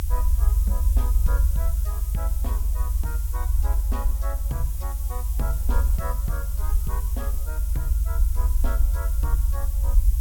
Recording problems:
hiss; slope +2 dB per octave, SNR 2 dB
rumble; below 68 Hz, strongest tone 48 Hz, SNR -13 dB

